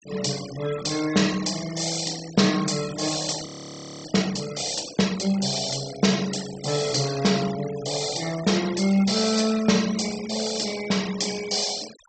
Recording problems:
treble cut off; nothing above 8 kHz
noise reduction artefacts; signal-to-artefact ratio 14 dB
audio freezing; at 3.5 s for 0.5 s

